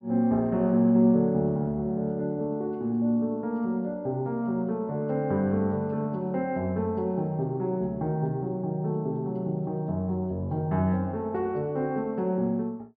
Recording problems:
treble cut off; nothing above 5.4 kHz

